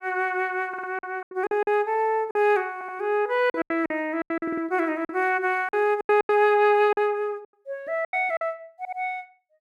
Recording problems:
packet loss; 11% of the sound replaced, filled with silence
audio stuttering; 4 times, first at 0.5 s

